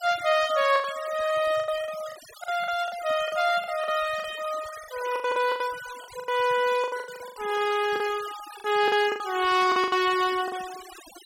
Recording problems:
denoising artefacts; signal-to-artefact ratio 15 dB
packet loss; 14% of the sound replaced, filled with the last packet

